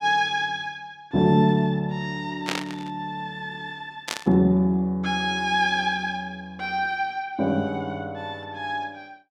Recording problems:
burst of static; at 2.5 s and at 4 s; peak +1 dB vs average level

